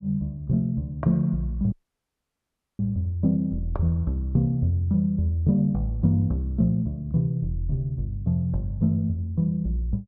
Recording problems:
audio cutting out; at 1.5 s for 1 s

